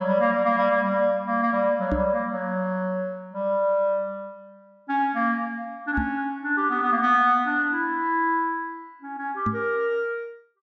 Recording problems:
treble missing; nothing above 8 kHz
knock on the microphone; at 2 s, at 6 s and at 9.5 s; peak 0 dB vs average level

